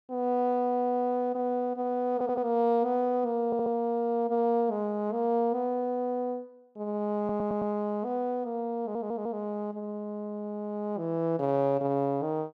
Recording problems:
audio stuttering; 4 times, first at 2 s

